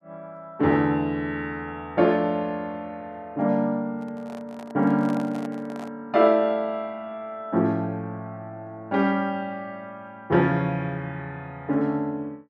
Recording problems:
handling noise; from 4 to 6 s; peak -9 dB vs average level

